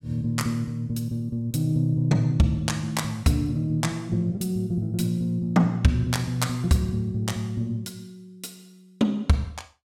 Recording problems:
none

